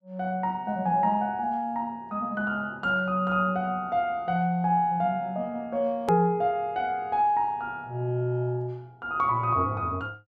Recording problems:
click at an edit; at 6 s

